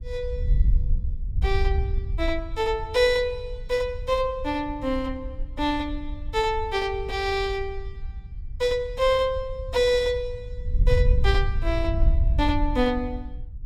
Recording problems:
wind on the microphone; below 68 Hz, SNR 4 dB

